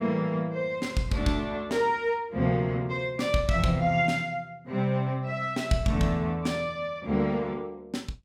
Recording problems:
none

